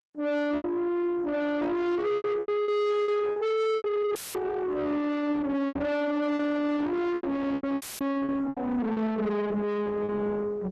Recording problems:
lossy codec; Opus, then MP3, log-spectral distance 2 dB, nothing above 11.6 kHz
distorted audio; soft clipping, signal-to-distortion ratio 7 dB
packet loss; 10% of the sound replaced, filled with repeated pitch periods
dropout; at 4 s and at 8 s; filled with static
knock on the microphone; at 5.5 s; peak -2 dB vs average level

